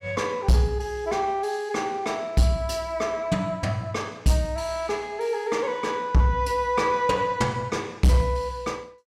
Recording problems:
distortion; hard clipping, signal-to-distortion ratio 11 dB

